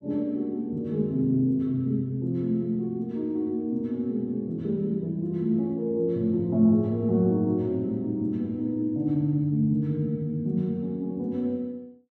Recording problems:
none

